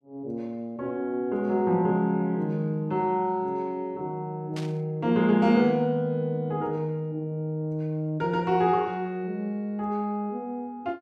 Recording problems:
burst of static; at 4.5 s; peak -9 dB vs average level

